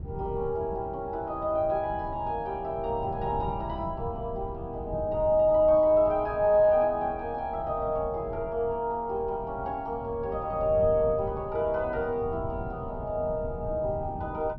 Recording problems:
treble missing; nothing above 5.7 kHz
wind noise; below 170 Hz, SNR 13 dB

